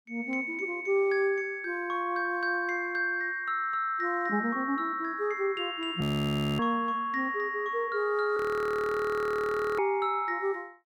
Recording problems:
frozen audio; at 6 s for 0.5 s and at 8.5 s for 1.5 s

